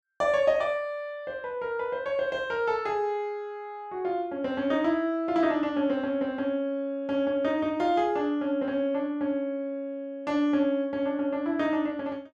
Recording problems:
none

